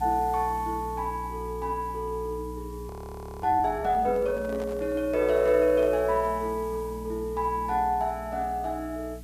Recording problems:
hum; 60 Hz, harmonics up to 300 Hz, SNR 15 dB
hiss; slope +1 dB per octave, SNR 25 dB
frozen audio; at 3 s for 0.5 s
microphone handling noise; from 4 to 6.5 s; peak -10 dB vs average level

